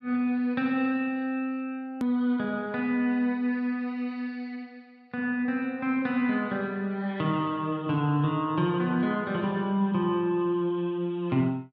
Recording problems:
hard cut with a click; at 2 s

